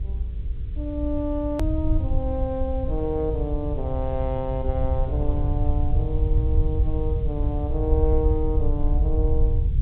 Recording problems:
treble cut off; nothing above 4 kHz
hum; 60 Hz, harmonics up to 480 Hz, SNR 21 dB
background hiss; SNR 29 dB
rumble; below 78 Hz, SNR -3 dB
click at an edit; at 1.5 s

